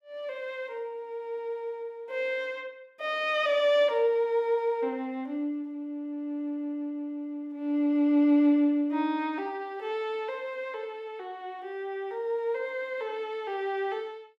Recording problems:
none

